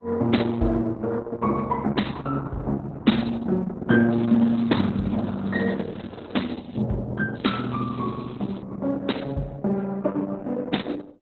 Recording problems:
lossy codec; Opus, then Opus, log-spectral distance 5 dB, nothing above 4 kHz
crackling; from 4 to 7 s and from 7.5 to 8.5 s; loose cable, SNR 27 dB

